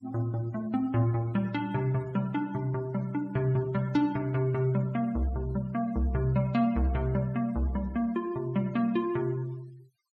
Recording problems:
denoising artefacts; signal-to-artefact ratio 25 dB

